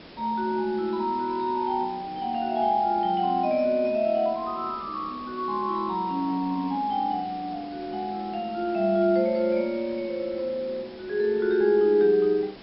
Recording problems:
low-pass filter; nothing above 5.3 kHz
hiss; SNR 19 dB

